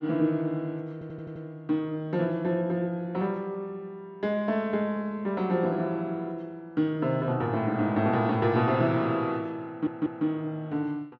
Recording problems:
audio stuttering; at 1 s and at 9.5 s

